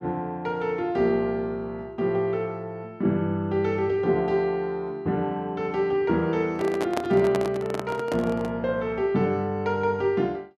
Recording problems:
handling noise; from 6.5 to 8.5 s; peak +2 dB vs average level

